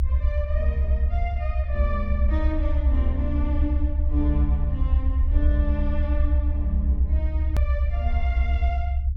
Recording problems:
rumble; below 70 Hz, SNR -9 dB
click at an edit; at 7.5 s

